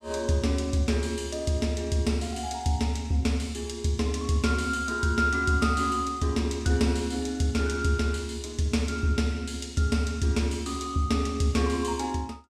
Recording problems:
none

